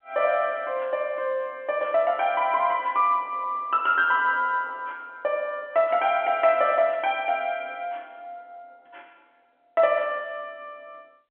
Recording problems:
telephone audio; 280 Hz to 3.6 kHz, G.711

